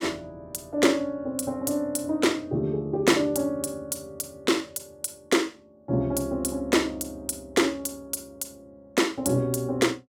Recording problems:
none

